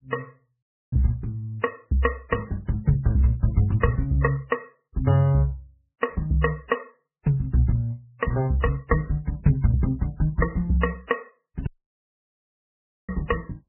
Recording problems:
lossy codec; MP3, log-spectral distance 2 dB, nothing above 2.8 kHz
audio cutting out; at 0.5 s and at 12 s for 1.5 s

